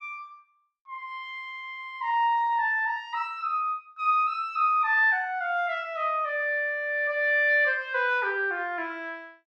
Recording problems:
none

